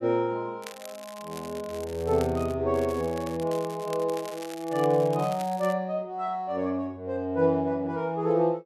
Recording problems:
crackle; from 0.5 to 2.5 s and from 2.5 to 5.5 s; loose cable, SNR 18 dB

